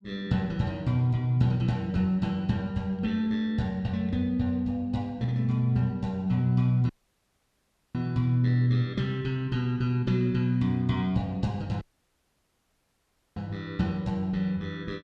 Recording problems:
dropout; at 7 s for 1 s and at 12 s for 1.5 s

